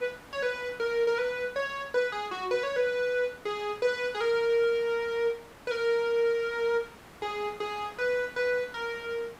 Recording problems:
hiss; SNR 21 dB

